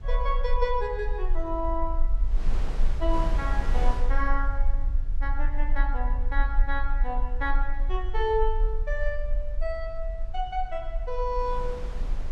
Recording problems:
rumble; below 40 Hz, strongest tone 20 Hz, SNR -1 dB
wind on the microphone; below 810 Hz, SNR 8 dB

